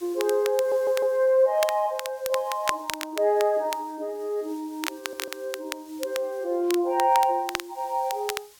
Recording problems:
background hiss; slope +2 dB per octave, SNR 26 dB
crackling; vinyl, SNR 10 dB
audio stuttering; at 0.5 s and at 5 s

